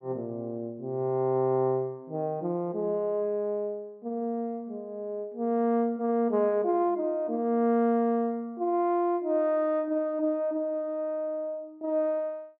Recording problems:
none

